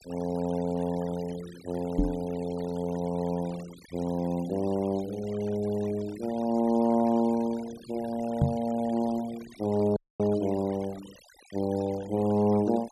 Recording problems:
noise reduction artefacts; signal-to-artefact ratio 19 dB
microphone bump; at 2 s and at 8.5 s; peak +8 dB vs average level
audio cutting out; at 10 s

